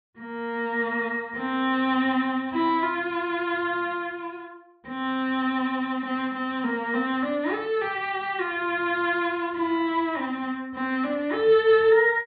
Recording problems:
low-pass filter; nothing above 4.4 kHz

